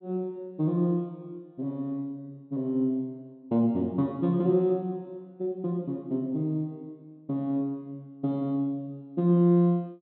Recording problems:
low-pass filter; nothing above 4.1 kHz

